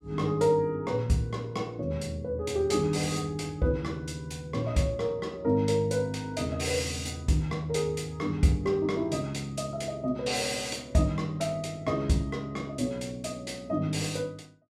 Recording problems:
none

